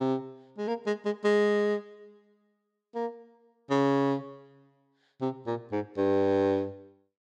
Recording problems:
none

